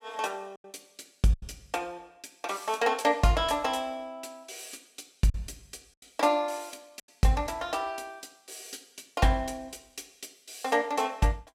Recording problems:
lost packets; 3% of the sound replaced, filled with silence

